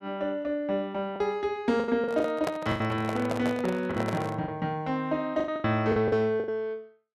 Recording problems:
packet loss; 10% of the sound replaced, filled with the last packet
handling noise; from 2 to 4.5 s; peak +1 dB vs average level

